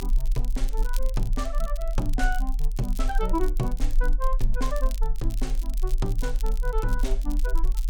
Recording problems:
low-frequency rumble; below 40 Hz, strongest tone 30 Hz, SNR -3 dB
crackle; vinyl, SNR 14 dB

